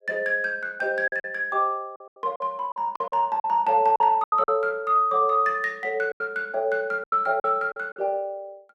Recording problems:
packet loss; 9% of the sound replaced, filled with silence

